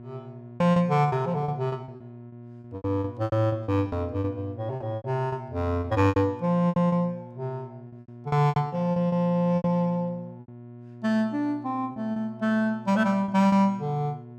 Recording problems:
mains hum; 60 Hz, harmonics up to 720 Hz, SNR 18 dB
packet loss; 12% of the sound replaced, filled with repeated pitch periods

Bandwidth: 15.5 kHz